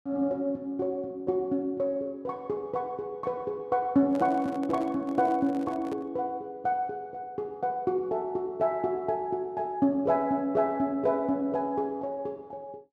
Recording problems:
microphone handling noise; from 4 to 6 s; peak -8 dB vs average level

